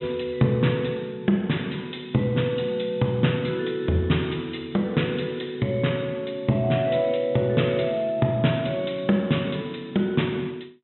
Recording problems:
treble missing; nothing above 3.8 kHz

